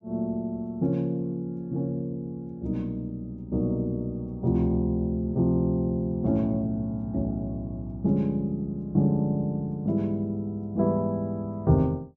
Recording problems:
none

